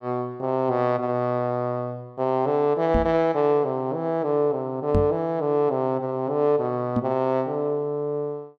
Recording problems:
microphone thump; at 3 s, at 5 s and at 7 s; peak +3 dB vs average level

